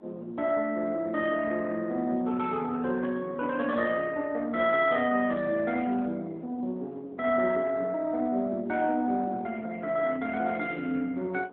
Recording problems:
phone line; 190 Hz to 3.5 kHz, AMR-NB
wind noise; below 590 Hz, SNR 21 dB

